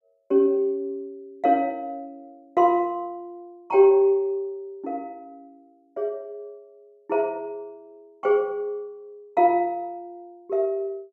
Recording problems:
none

